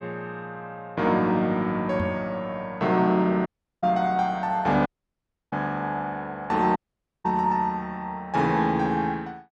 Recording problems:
microphone thump; at 2 s; peak -1 dB vs average level
audio cutting out; at 3.5 s, at 5 s for 0.5 s and at 7 s

